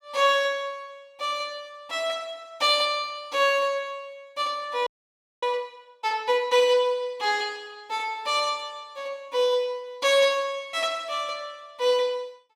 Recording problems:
frozen audio; at 5 s for 0.5 s

